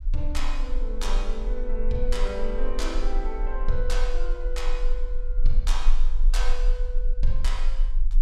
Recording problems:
rumble; below 30 Hz, strongest tone 18 Hz, SNR -5 dB

